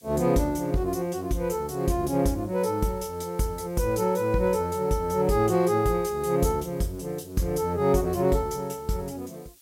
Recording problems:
background hiss; slope +3 dB per octave, SNR 27 dB

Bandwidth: 16 kHz